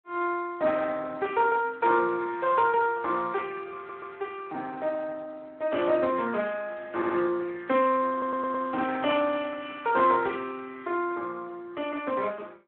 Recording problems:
telephone audio; 190 Hz to 3.2 kHz, Speex
audio stuttering; at 4 s, at 7 s and at 8 s

